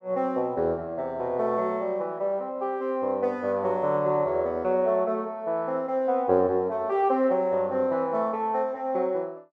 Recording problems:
none

